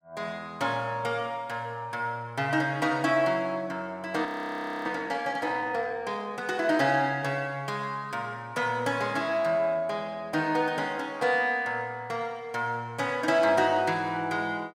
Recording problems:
audio freezing; at 4.5 s for 0.5 s

